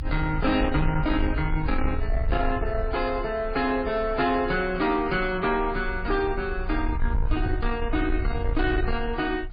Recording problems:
lossy compression; MP3, log-spectral distance 2 dB, nothing above 4.8 kHz
distorted audio; soft clipping, signal-to-distortion ratio 12 dB
rumble; below 68 Hz, SNR 5 dB
knock on the microphone; at 7.5 s; peak +5 dB vs average level

